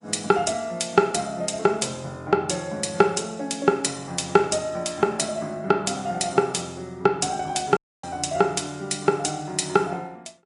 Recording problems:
lossy compression; MP3, log-spectral distance 4 dB, nothing above 10.4 kHz
dropout; at 8 s

